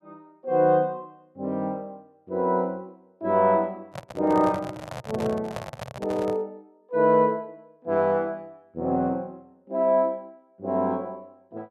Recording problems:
microphone handling noise; from 4 to 6.5 s; peak -5 dB vs average level

